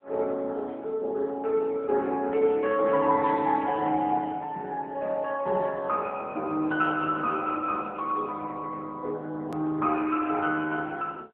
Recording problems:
phone line; 240 Hz to 3.6 kHz, AMR-NB
click at an edit; at 9.5 s

